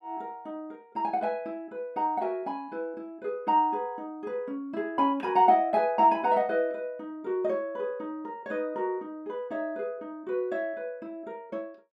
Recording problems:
none

